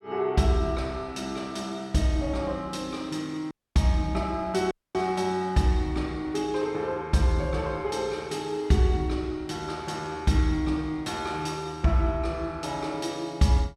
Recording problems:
dropout; at 3.5 s and at 4.5 s

